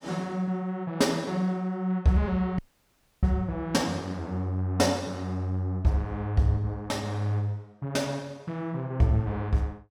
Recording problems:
dropout; at 2.5 s for 0.5 s

